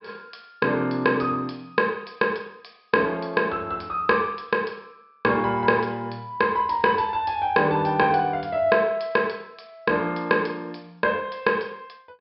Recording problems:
low-pass filter; nothing above 5 kHz

